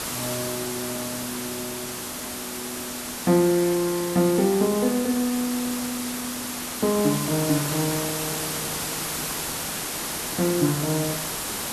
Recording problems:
hiss; slope -2 dB per octave, SNR 4 dB

